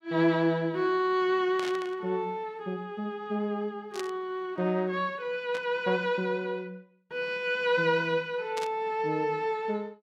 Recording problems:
static burst; 4 times, first at 1.5 s; peak -5 dB vs average level

